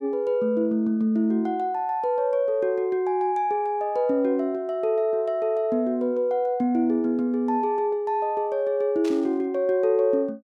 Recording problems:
static burst; at 9 s; peak -12 dB vs average level

